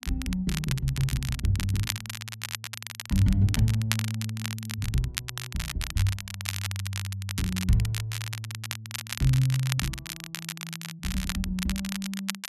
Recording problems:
crackle; vinyl, SNR 6 dB

